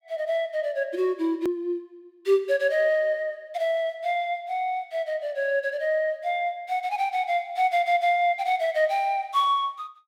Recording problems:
edit click; at 1.5 s

